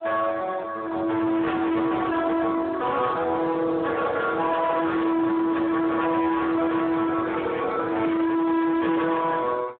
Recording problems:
telephone audio; 260 Hz to 2.2 kHz, Speex
distorted audio; soft clipping, signal-to-distortion ratio 7 dB

